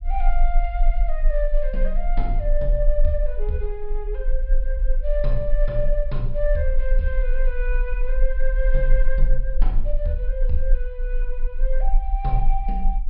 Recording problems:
treble missing; nothing above 5.5 kHz
low-frequency rumble; below 34 Hz, strongest tone 22 Hz, SNR -4 dB

